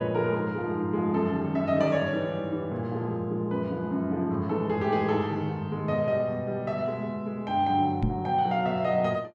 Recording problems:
microphone thump; at 8 s; peak +4 dB vs average level

